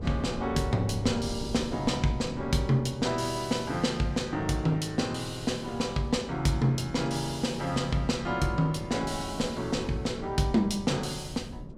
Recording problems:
wind noise; below 260 Hz, SNR 13 dB

